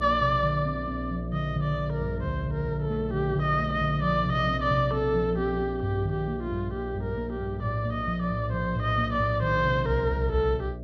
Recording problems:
electrical hum; 60 Hz, harmonics up to 660 Hz, SNR 8 dB

